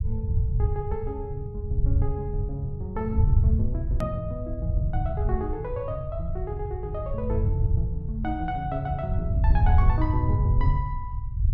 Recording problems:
rumble; below 98 Hz, SNR -5 dB
edit click; at 4 s

